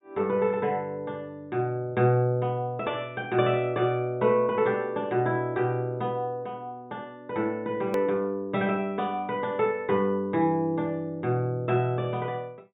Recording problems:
low-pass filter; nothing above 4 kHz
edit click; at 8 s

